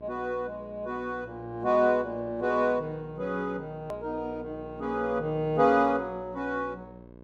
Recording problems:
mains hum; 60 Hz, harmonics up to 1.1 kHz, SNR 19 dB
edit click; at 4 s

